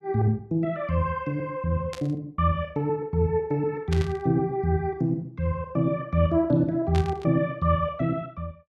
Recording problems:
burst of static; at 2 s, at 4 s and at 7 s; peak -6 dB vs average level

